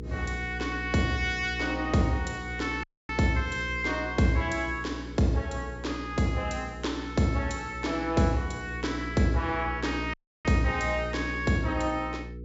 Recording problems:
treble cut off; nothing above 8 kHz
hum; 60 Hz, harmonics up to 480 Hz, SNR 10 dB
audio cutting out; at 3 s and at 10 s

